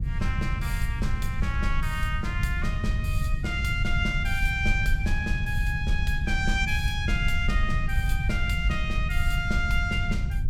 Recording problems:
low-frequency rumble; below 92 Hz, SNR -1 dB

